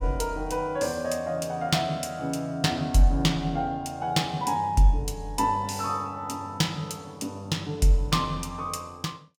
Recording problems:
none

